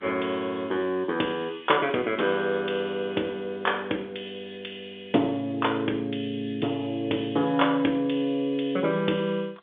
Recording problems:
phone line; 240 Hz to 3.9 kHz, G.711

